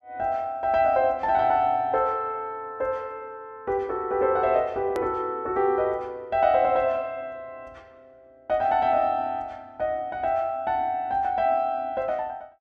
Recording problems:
edit click; at 5 s

